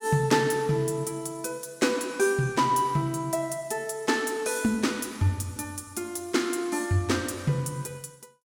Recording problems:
none

